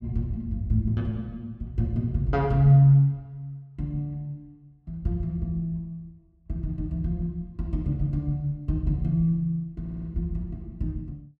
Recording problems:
audio stuttering; at 10 s

